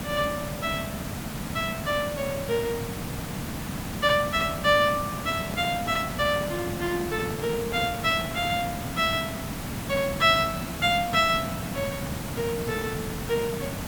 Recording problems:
hiss; slope -4 dB per octave, SNR 6 dB
microphone handling noise; from 5 to 8.5 s; peak -10 dB vs average level

